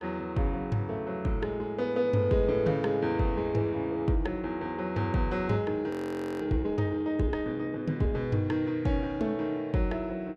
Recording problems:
frozen audio; at 6 s for 0.5 s

